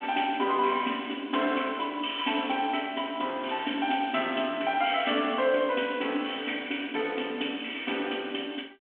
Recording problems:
phone line; 190 Hz to 3.4 kHz, G.726

